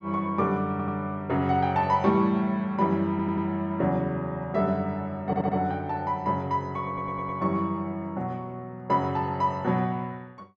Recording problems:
stutter; 4 times, first at 0.5 s

